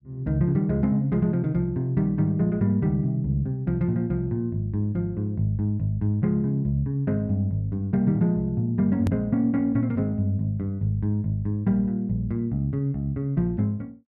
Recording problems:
click at an edit; at 9 s

